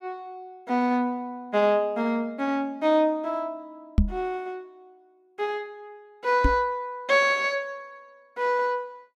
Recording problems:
knock on the microphone; at 4 s and at 6.5 s; peak +8 dB vs average level

